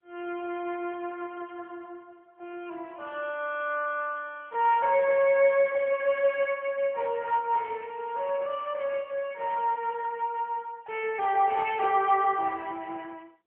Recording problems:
telephone audio; 320 Hz to 3.2 kHz, AMR-NB

